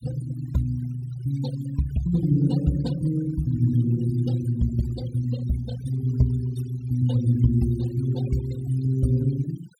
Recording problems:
noise reduction artefacts; signal-to-artefact ratio 18 dB

